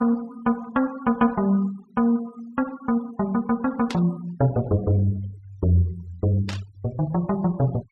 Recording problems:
noise reduction artefacts; signal-to-artefact ratio 23 dB
burst of static; at 4 s and at 6.5 s; peak -4 dB vs average level

